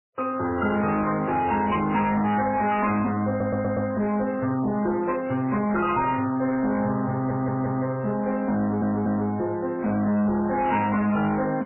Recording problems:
lossy compression; MP3, then AAC, log-spectral distance 3 dB, nothing above 2.9 kHz
distorted audio; hard clipping, signal-to-distortion ratio 10 dB
audio stuttering; at 3.5 s, at 7 s and at 8.5 s

